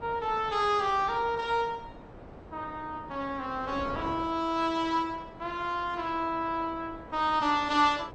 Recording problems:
lossy codec; AAC, then MP2, log-spectral distance 2 dB, nothing above 7.3 kHz
wind on the microphone; below 750 Hz, SNR 17 dB

